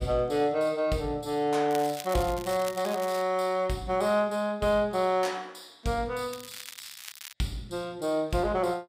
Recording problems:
crackle; from 1.5 to 3 s and from 6.5 to 7.5 s; loose cable, SNR 14 dB

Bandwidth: 15.5 kHz